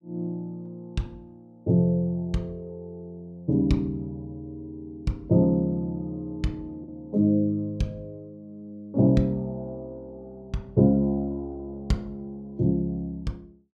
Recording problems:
lost packets; 0.3% of the sound replaced, filled with the last packet

